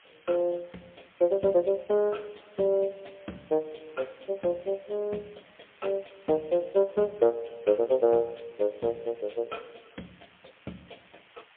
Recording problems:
phone line; 240 Hz to 3.6 kHz, AMR-NB, then MP3
background hiss; SNR 28 dB

